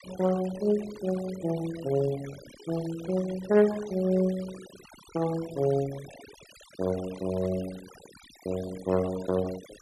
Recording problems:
denoising artefacts; signal-to-artefact ratio 17 dB

